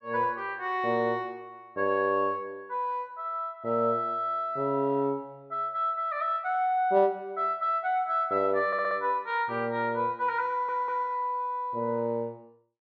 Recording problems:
audio stuttering; at 8.5 s and at 10 s

